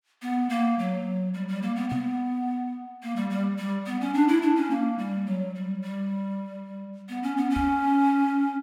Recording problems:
microphone thump; at 2 s and at 7.5 s; peak -2 dB vs average level

